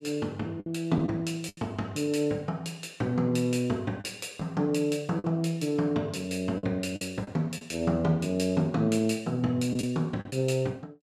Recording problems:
packet loss; 5% of the sound replaced, filled with the last packet

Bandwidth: 14.5 kHz